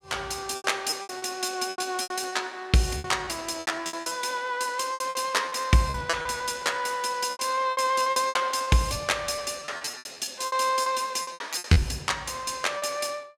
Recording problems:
lost packets; 17% of the sound replaced, filled with repeated pitch periods

